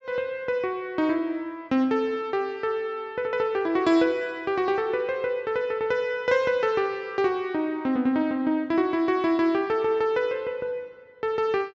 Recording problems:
treble cut off; nothing above 7.9 kHz

